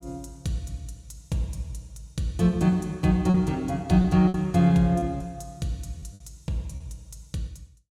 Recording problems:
packet loss; 4% of the sound replaced, filled with repeated pitch periods

